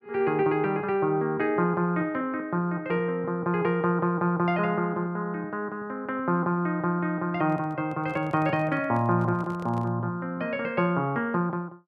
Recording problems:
handling noise; from 7.5 to 10 s; peak -13 dB vs average level

